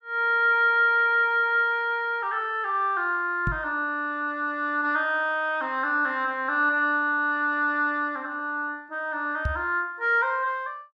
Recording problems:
microphone bump; at 3.5 s and at 9.5 s; peak -1 dB vs average level

